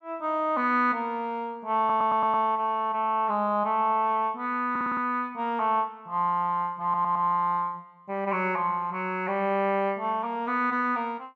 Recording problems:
audio stuttering; at 2 s, at 4.5 s and at 7 s

